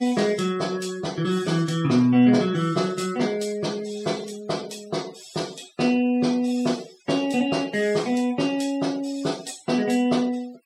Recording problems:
noise reduction artefacts; signal-to-artefact ratio 20 dB

